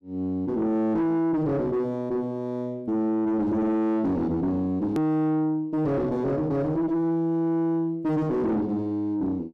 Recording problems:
distorted audio; soft clipping, signal-to-distortion ratio 7 dB
edit click; at 5 s

